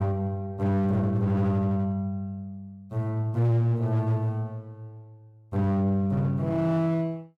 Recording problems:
distortion; hard clipping, uneven, signal-to-distortion ratio 10 dB

